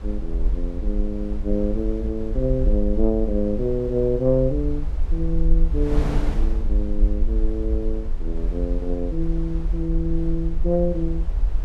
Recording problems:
low-frequency rumble; below 48 Hz, SNR 1 dB
wind noise; below 440 Hz, SNR 13 dB

